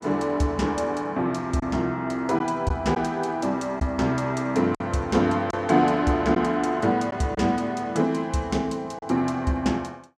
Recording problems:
lost packets; 2% of the sound replaced, filled with silence

